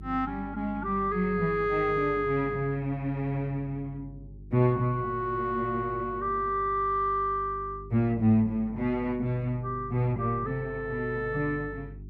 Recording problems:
hum; 50 Hz, harmonics up to 400 Hz, SNR 17 dB

